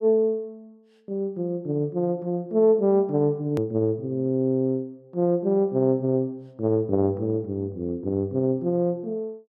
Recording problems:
click at an edit; at 3.5 s

